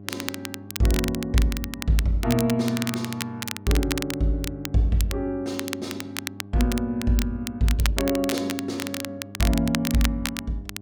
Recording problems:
hum; 50 Hz, harmonics up to 800 Hz, SNR 17 dB
crackling; vinyl, SNR 8 dB

